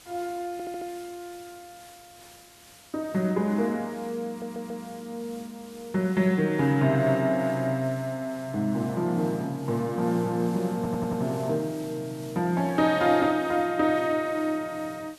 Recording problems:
background hiss; slope -1 dB per octave, SNR 22 dB
audio stuttering; at 0.5 s, at 4.5 s and at 11 s

